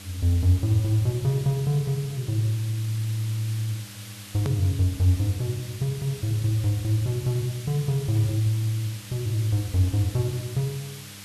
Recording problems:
electrical hum; 50 Hz, harmonics up to 800 Hz, SNR 21 dB
background hiss; slope +1 dB per octave, SNR 16 dB
click at an edit; at 4.5 s

